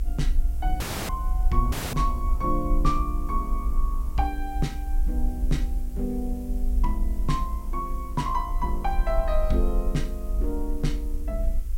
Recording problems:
mains hum; 50 Hz, harmonics up to 550 Hz, SNR 21 dB
background hiss; SNR 22 dB
low-frequency rumble; below 52 Hz, strongest tone 28 Hz, SNR -1 dB
dropout; at 1 s and at 1.5 s

